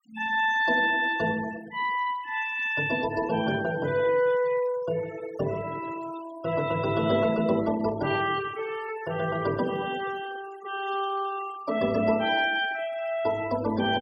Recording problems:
noise reduction artefacts; signal-to-artefact ratio 16 dB

